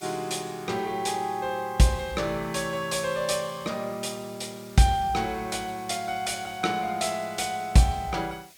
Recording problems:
background hiss; SNR 23 dB

